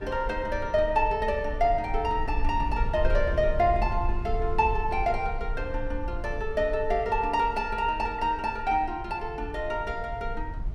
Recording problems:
low-frequency rumble; below 58 Hz, SNR 8 dB

